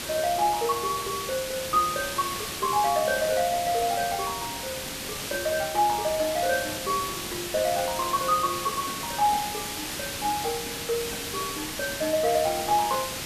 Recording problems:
background hiss; slope -1 dB per octave, SNR 5 dB

